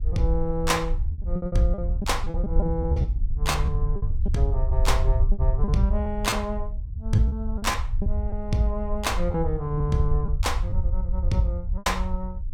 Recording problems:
low-frequency rumble; below 70 Hz, SNR 2 dB
wind noise; below 70 Hz, SNR 6 dB
lost packets; 8% of the sound replaced, filled with repeated pitch periods

